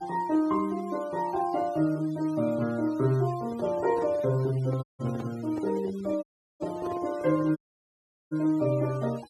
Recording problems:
noise reduction artefacts; signal-to-artefact ratio 22 dB
handling noise; from 3.5 to 7.5 s; peak -6 dB vs average level
audio cutting out; at 5 s, at 6 s and at 7.5 s for 0.5 s

